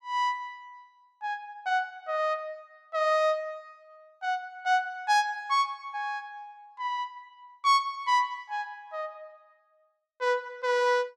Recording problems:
none

